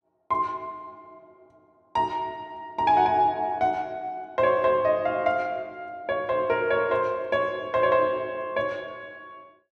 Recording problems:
none

